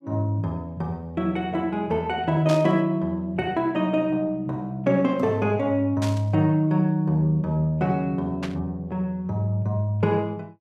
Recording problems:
burst of static; at 2.5 s, at 6 s and at 8.5 s; peak -6 dB vs average level

